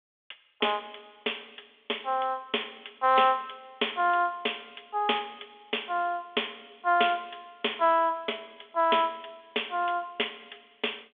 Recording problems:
telephone audio; 320 Hz to 3.5 kHz, G.726

